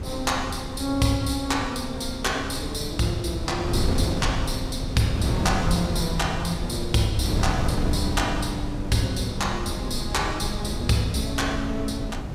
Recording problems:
wind on the microphone; below 230 Hz, SNR 3 dB

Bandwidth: 15.5 kHz